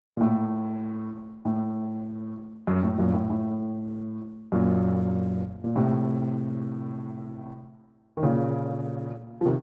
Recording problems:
lossy codec; Opus, log-spectral distance 2 dB, nothing above 7.3 kHz

